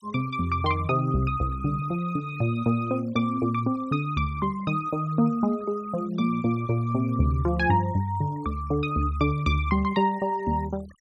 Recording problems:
denoising artefacts; signal-to-artefact ratio 26 dB

